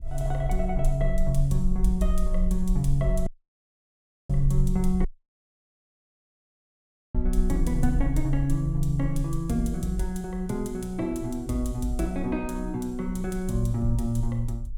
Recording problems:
rumble; below 44 Hz, strongest tone 22 Hz, SNR 4 dB
audio cutting out; at 3.5 s for 1 s and at 5 s for 2 s

